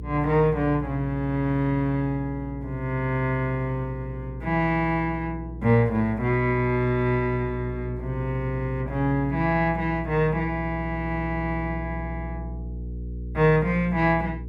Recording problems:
electrical hum; 60 Hz, harmonics up to 480 Hz, SNR 11 dB

